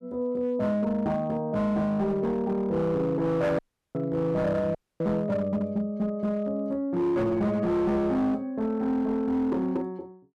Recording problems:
distortion; hard clipping, signal-to-distortion ratio 12 dB
dropout; at 3.5 s and at 5 s

